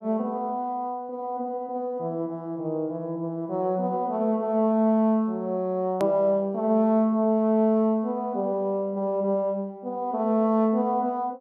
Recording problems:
hard cut with a click; at 6 s

